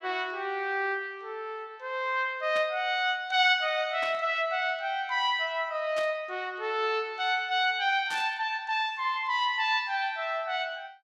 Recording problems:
burst of static; 4 times, first at 2.5 s; peak -8 dB vs average level

